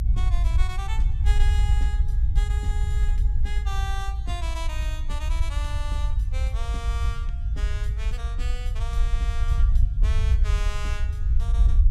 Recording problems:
rumble; below 64 Hz, SNR -12 dB

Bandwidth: 15 kHz